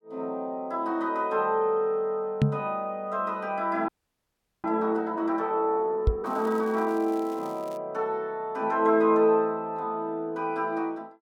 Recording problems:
knock on the microphone; at 2.5 s and at 6 s; peak +8 dB vs average level
frozen audio; at 4 s for 1 s
crackle; from 6.5 to 8 s; loose cable, SNR 26 dB

